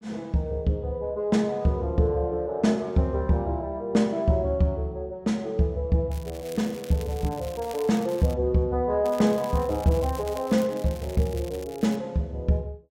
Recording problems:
crackling; from 6 to 8.5 s and from 9 to 12 s; loose cable, SNR 20 dB

